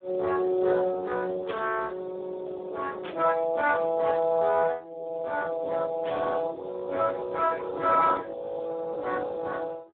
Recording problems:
telephone audio; 300 Hz to 2 kHz, Speex
burst of static; at 1.5 s, at 3 s and at 6 s; peak -8 dB vs average level

